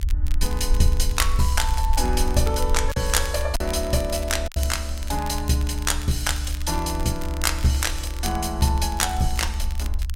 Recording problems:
rumble; below 70 Hz, SNR 4 dB
crackling; vinyl, SNR 16 dB
packet loss; 1.6% of the sound replaced, filled with silence

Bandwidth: 16 kHz